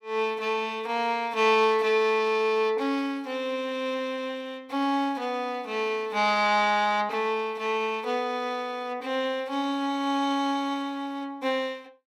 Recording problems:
none

